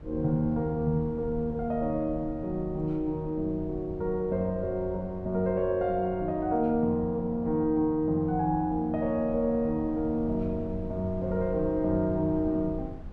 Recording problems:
rumble; below 120 Hz, SNR 15 dB

